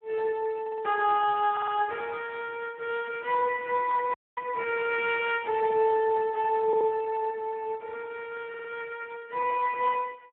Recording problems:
telephone audio; 190 Hz to 3.4 kHz, Speex
stutter; 4 times, first at 0.5 s
dropout; at 4 s

